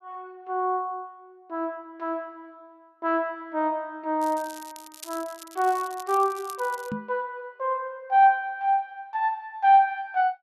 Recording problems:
crackle; from 4 to 7 s; loose cable, SNR 19 dB
microphone bump; at 7 s; peak -3 dB vs average level

